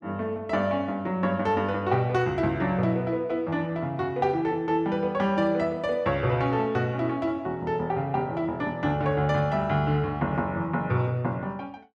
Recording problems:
none

